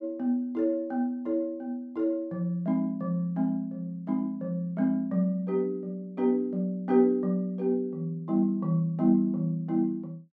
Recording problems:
none

